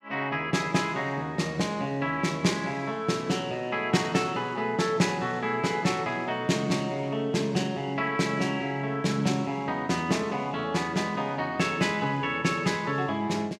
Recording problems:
none

